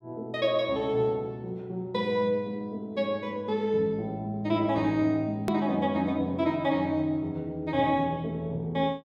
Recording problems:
edit click; at 5.5 s

